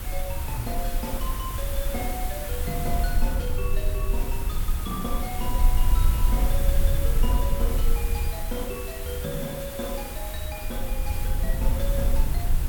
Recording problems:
hiss; slope -3 dB per octave, SNR 2 dB
rumble; below 54 Hz, strongest tone 20 Hz, SNR -5 dB

